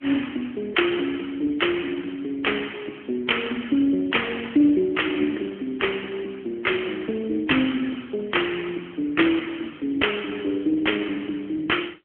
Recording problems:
phone line; 240 Hz to 3.3 kHz, AMR-NB

